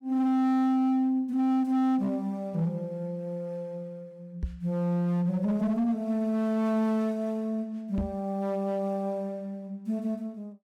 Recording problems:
distorted audio; hard clipping, signal-to-distortion ratio 12 dB
microphone bump; at 4.5 s and at 8 s; peak 0 dB vs average level

